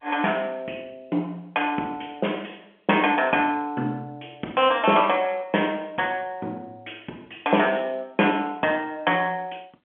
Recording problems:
phone line; 170 Hz to 3.3 kHz, G.711

